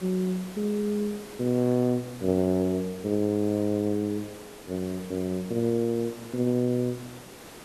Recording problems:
hiss; slope -4 dB per octave, SNR 17 dB

